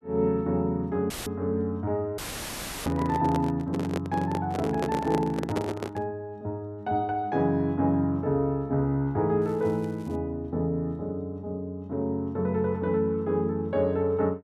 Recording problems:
dropout; at 1 s and at 2 s for 0.5 s; filled with static
handling noise; from 3 to 6 s; peak +2 dB vs average level
crackle; at 9.5 s; loose cable, SNR 30 dB

